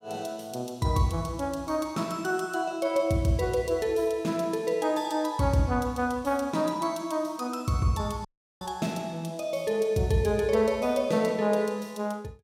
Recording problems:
dropout; at 8.5 s

